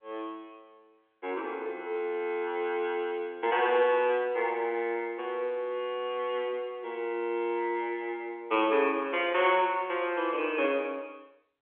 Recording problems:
phone line; 300 Hz to 3.3 kHz, G.711

